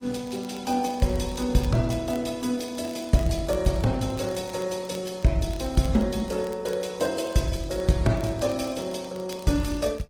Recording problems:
lossy compression; AAC, then Opus, log-spectral distance 5 dB, nothing above 18.9 kHz
crackling; vinyl, SNR 24 dB

